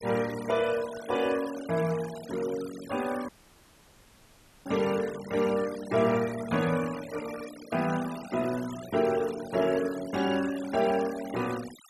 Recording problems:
noise reduction artefacts; signal-to-artefact ratio 15 dB
audio cutting out; at 3.5 s for 1.5 s

